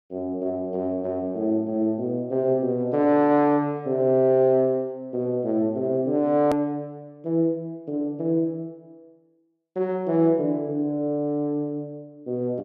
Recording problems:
click at an edit; at 6.5 s

